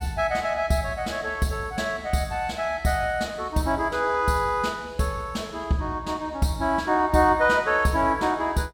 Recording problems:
none

